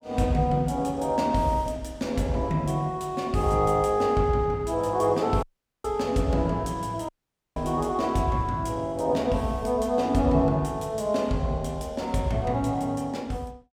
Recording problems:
audio cutting out; at 5.5 s and at 7 s

